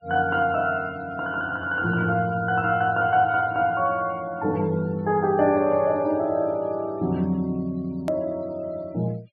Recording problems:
low-pass filter; nothing above 5 kHz
denoising artefacts; signal-to-artefact ratio 28 dB
edit click; at 8 s

